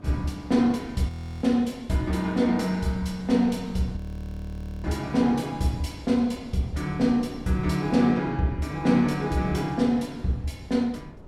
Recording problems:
wind on the microphone; below 320 Hz, SNR 20 dB
audio freezing; at 1 s and at 4 s for 1 s

